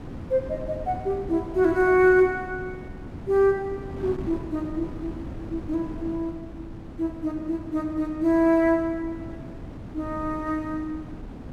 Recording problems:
wind on the microphone; below 300 Hz, SNR 13 dB

